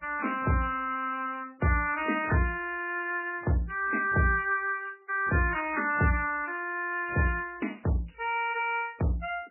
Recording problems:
lossy compression; MP3, log-spectral distance 5 dB, nothing above 2.5 kHz

